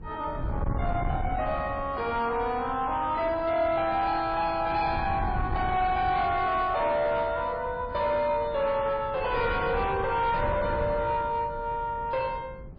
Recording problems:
lossy codec; MP3, log-spectral distance 2 dB, nothing above 4.4 kHz
distortion; soft clipping, signal-to-distortion ratio 11 dB
wind on the microphone; below 200 Hz, SNR 10 dB

